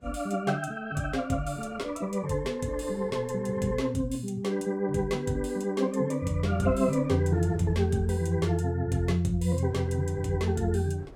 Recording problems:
wind on the microphone; below 430 Hz, SNR 22 dB

